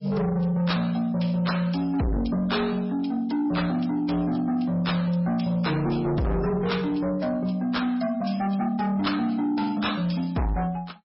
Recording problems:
lossy codec; MP3, log-spectral distance 3 dB, nothing above 5.3 kHz
distorted audio; soft clipping, signal-to-distortion ratio 8 dB

